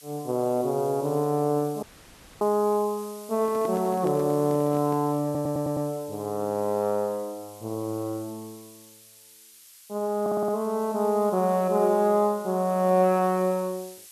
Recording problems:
hiss; slope +5 dB per octave, SNR 21 dB
audio cutting out; at 2 s for 0.5 s
handling noise; from 3.5 to 5 s; peak -7 dB vs average level
stutter; at 5 s and at 10 s

